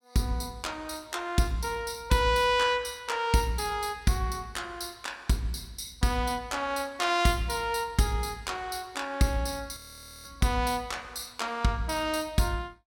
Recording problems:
frozen audio; at 10 s

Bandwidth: 17 kHz